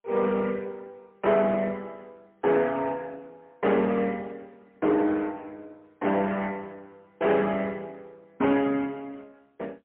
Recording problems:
telephone audio; 190 Hz to 3.3 kHz, AMR-NB, then MP3
distortion; hard clipping, signal-to-distortion ratio 12 dB

